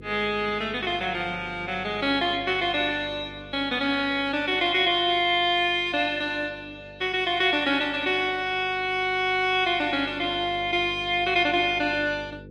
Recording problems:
lossy codec; MP3, log-spectral distance 2 dB, nothing above 9.8 kHz
electrical hum; 50 Hz, harmonics up to 500 Hz, SNR 22 dB

